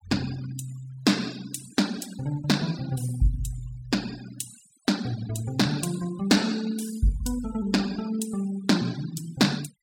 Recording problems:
noise reduction artefacts; signal-to-artefact ratio 17 dB

